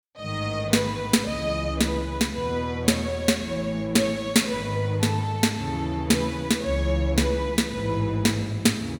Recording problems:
none

